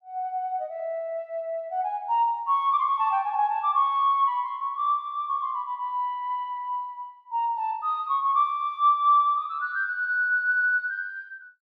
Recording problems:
none

